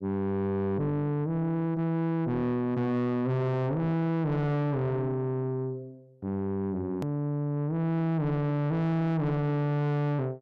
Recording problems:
distortion; soft clipping, signal-to-distortion ratio 5 dB
edit click; at 7 s

